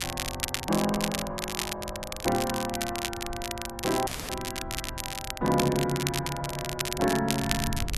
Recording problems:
wind on the microphone; below 130 Hz, SNR 14 dB
crackling; vinyl, SNR 3 dB
dropout; at 4 s

